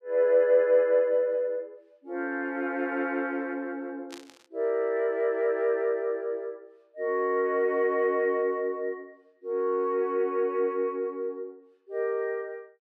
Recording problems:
static burst; at 4 s; peak -12 dB vs average level

